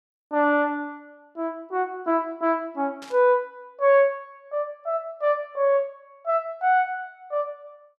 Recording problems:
burst of static; at 3 s; peak -14 dB vs average level

